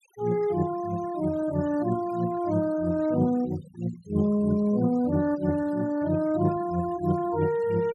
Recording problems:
denoising artefacts; signal-to-artefact ratio 19 dB

